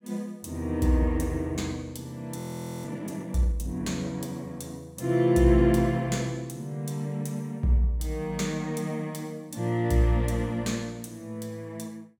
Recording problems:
audio freezing; at 2.5 s

